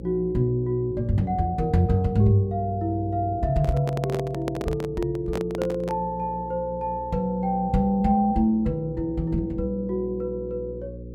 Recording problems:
electrical hum; 60 Hz, harmonics up to 540 Hz, SNR 15 dB
handling noise; from 3.5 to 6 s; peak -2 dB vs average level

